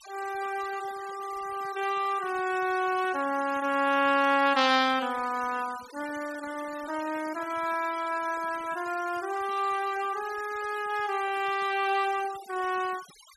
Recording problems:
noise reduction artefacts; signal-to-artefact ratio 17 dB

